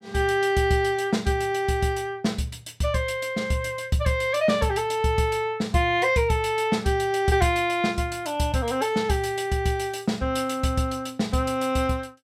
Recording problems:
none

